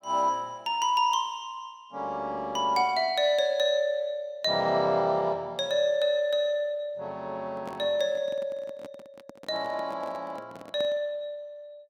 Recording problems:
handling noise; from 7.5 to 11 s; peak -10 dB vs average level

